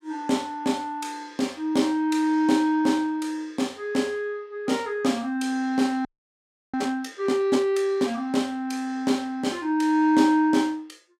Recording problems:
frozen audio; at 6 s for 0.5 s

